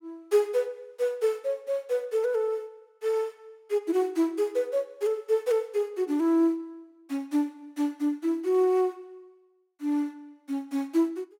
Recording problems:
none

